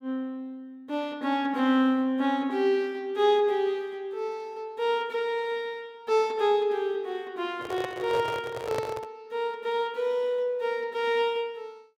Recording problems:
microphone handling noise; from 7.5 to 9 s; peak -1 dB vs average level

